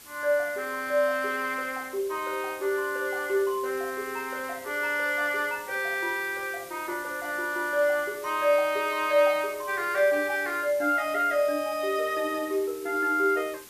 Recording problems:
hiss; SNR 18 dB

